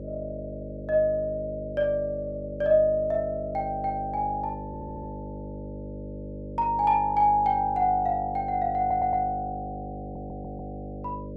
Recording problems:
hum; 50 Hz, harmonics up to 600 Hz, SNR 12 dB
audio stuttering; at 4.5 s, at 9 s and at 10 s

